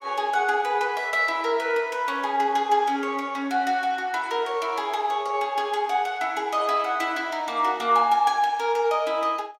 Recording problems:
none

